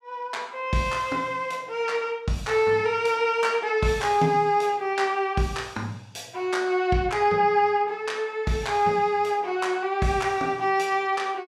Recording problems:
none

